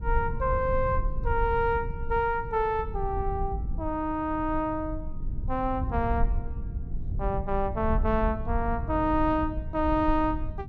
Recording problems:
low-frequency rumble; below 78 Hz, SNR 5 dB

